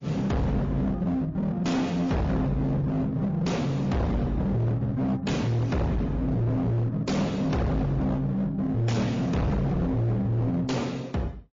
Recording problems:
lossy codec; AAC, then MP3, log-spectral distance 2 dB, nothing above 16 kHz
distortion; hard clipping, uneven, signal-to-distortion ratio 5 dB

